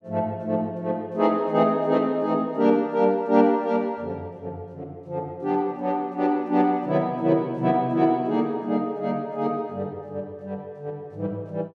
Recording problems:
none

